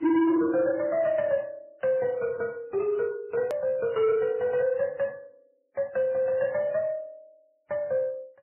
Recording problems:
lossy codec; MP3, then MP3, log-spectral distance 2 dB, nothing above 13.3 kHz
distortion; soft clipping, signal-to-distortion ratio 11 dB
hard cut with a click; at 3.5 s

